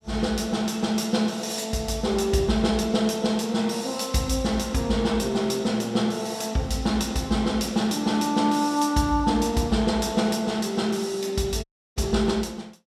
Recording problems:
audio cutting out; at 12 s

